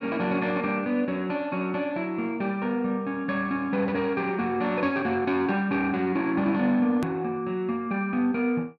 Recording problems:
click at an edit; at 7 s

